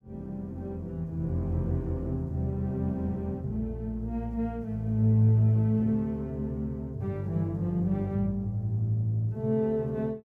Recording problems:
none

